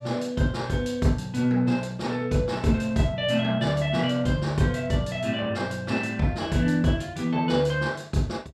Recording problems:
none

